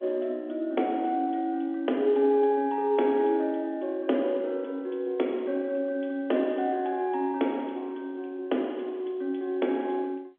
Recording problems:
phone line; 220 Hz to 3.6 kHz, G.711

